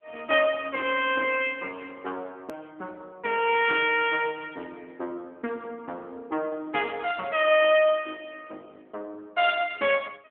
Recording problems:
telephone audio; 240 Hz to 3.5 kHz, AMR-NB
click at an edit; at 2.5 s

